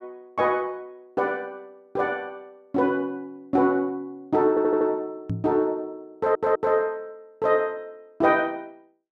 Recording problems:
stutter; at 4.5 s and at 6 s
microphone thump; at 5.5 s; peak 0 dB vs average level

